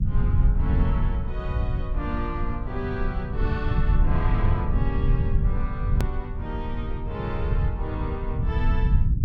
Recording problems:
rumble; below 100 Hz, SNR -7 dB
hard cut with a click; at 6 s

